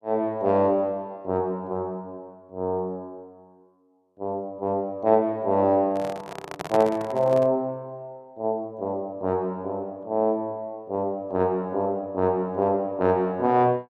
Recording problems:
microphone handling noise; from 6 to 7.5 s; peak -2 dB vs average level

